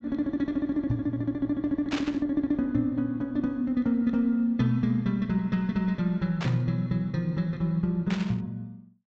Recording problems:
treble missing; nothing above 8 kHz
static burst; at 2 s, at 6.5 s and at 8 s; peak -3 dB vs average level

